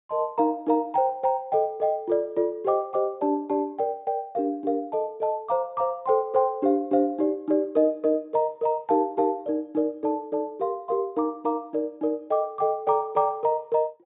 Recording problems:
treble cut off; nothing above 4 kHz

